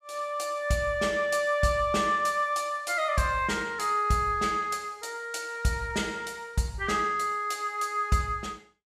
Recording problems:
none

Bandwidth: 14.5 kHz